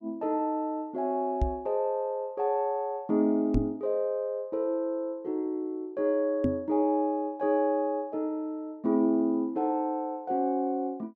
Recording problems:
microphone thump; at 1.5 s, at 3.5 s and at 6.5 s; peak +5 dB vs average level

